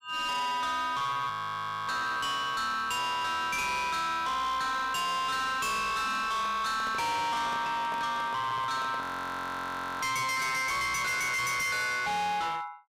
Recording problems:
distorted audio; hard clipping, uneven, signal-to-distortion ratio 6 dB
audio freezing; at 1.5 s for 0.5 s and at 9 s for 1 s
handling noise; from 6 to 10 s; peak -7 dB vs average level

